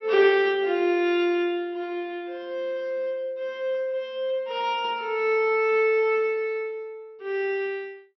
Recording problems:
treble missing; nothing above 5.8 kHz

